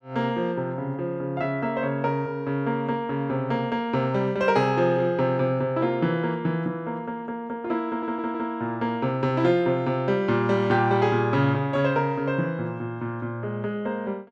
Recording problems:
stutter; at 8 s

